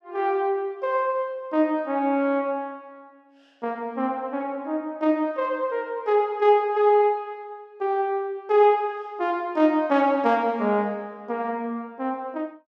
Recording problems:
none

